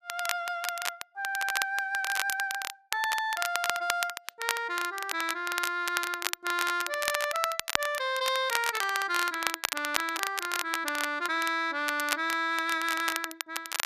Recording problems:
crackling; vinyl, SNR 4 dB

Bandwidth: 14.5 kHz